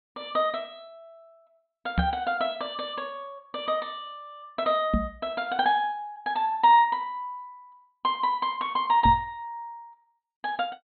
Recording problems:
treble missing; nothing above 4.3 kHz
microphone bump; at 2 s, at 5 s and at 9 s; peak +5 dB vs average level

